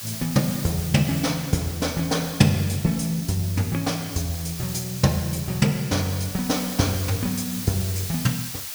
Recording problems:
hiss; slope +3 dB per octave, SNR 9 dB

